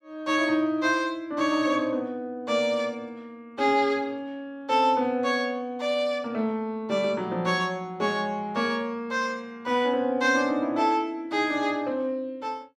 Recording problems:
none

